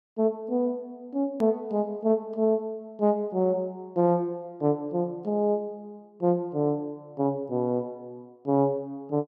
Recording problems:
hard cut with a click; at 1.5 s

